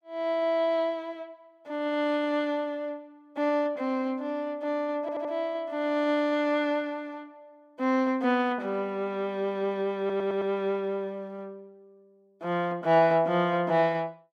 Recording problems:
stutter; at 5 s and at 10 s

